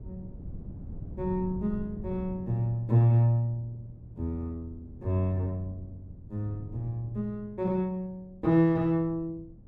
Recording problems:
wind noise; below 150 Hz, SNR 16 dB

